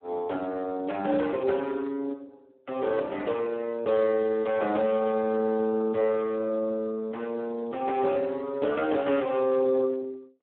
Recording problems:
phone line; 220 Hz to 3.2 kHz, Speex

